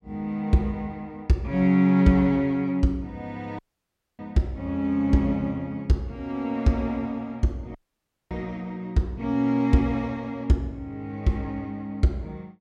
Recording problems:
audio cutting out; at 3.5 s for 0.5 s and at 8 s for 0.5 s

